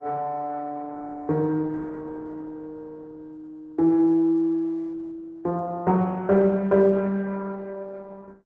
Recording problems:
codec artefacts; Opus, log-spectral distance 2 dB

